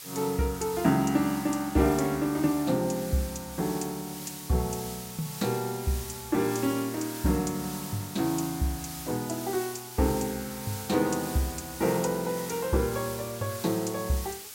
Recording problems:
hiss; slope +2 dB per octave, SNR 10 dB

